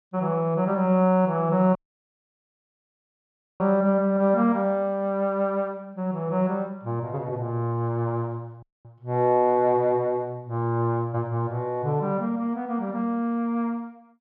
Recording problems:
audio cutting out; at 2 s for 2 s and at 8.5 s

